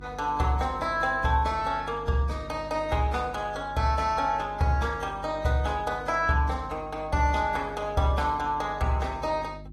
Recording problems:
lossy codec; AAC, log-spectral distance 2 dB
hum; 50 Hz, harmonics up to 350 Hz, SNR 18 dB

